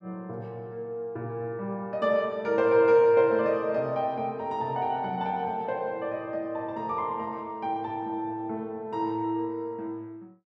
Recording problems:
none

